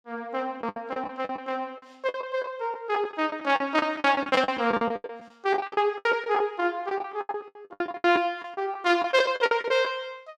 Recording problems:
lost packets; 19% of the sound replaced, filled with the last packet

